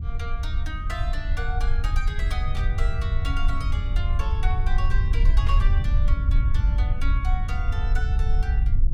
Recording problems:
rumble; below 68 Hz, SNR -10 dB
static burst; at 2.5 s and at 5.5 s; peak -2 dB vs average level

